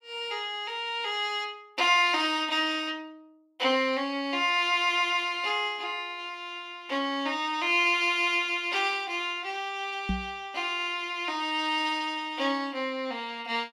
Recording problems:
microphone thump; at 10 s; peak +1 dB vs average level

